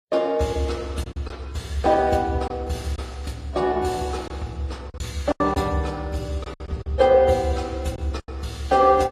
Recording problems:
lossy compression; AAC, then AAC, log-spectral distance 3 dB, nothing above 13.1 kHz
packet loss; 6% of the sound replaced, filled with silence

